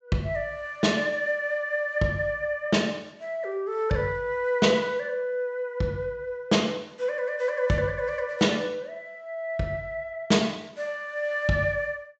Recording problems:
low-pass filter; nothing above 8 kHz

